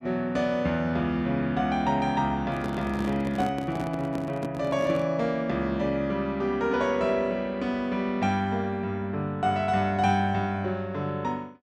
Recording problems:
microphone handling noise; from 2.5 to 5 s; peak -2 dB vs average level

